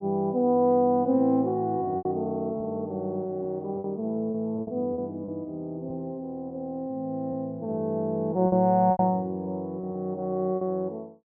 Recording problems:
packet loss; 5% of the sound replaced, filled with repeated pitch periods

